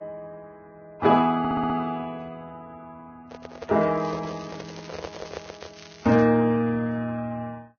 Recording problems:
lossy compression; Vorbis, log-spectral distance 5 dB, nothing above 6.2 kHz
audio stuttering; at 1.5 s
microphone handling noise; from 3.5 to 5.5 s; peak -6 dB vs average level
crackle; from 4 to 6 s; loose cable, SNR 23 dB

